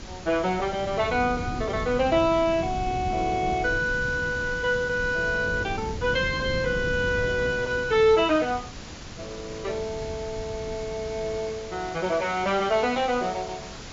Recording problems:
low-pass filter; nothing above 7.3 kHz
hiss; slope -2 dB per octave, SNR 16 dB
wind noise; below 230 Hz, SNR 12 dB

